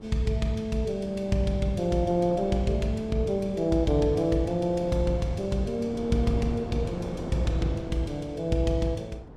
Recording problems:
wind noise; below 480 Hz, SNR 13 dB

